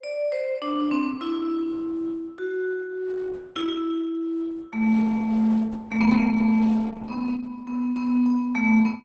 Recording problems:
codec artefacts; Opus, log-spectral distance 3 dB, nothing above 7.6 kHz

